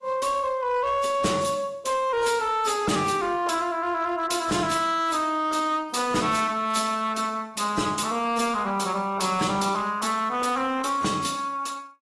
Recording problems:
lossy codec; AAC, log-spectral distance 4 dB, nothing above 11 kHz
distorted audio; hard clipping, signal-to-distortion ratio 12 dB

